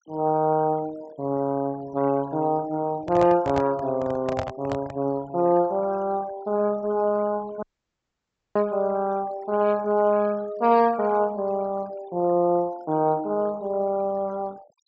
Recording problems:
low-pass filter; nothing above 7.7 kHz
noise reduction artefacts; signal-to-artefact ratio 23 dB
handling noise; from 3 to 5 s; peak -1 dB vs average level
audio cutting out; at 7.5 s for 1 s

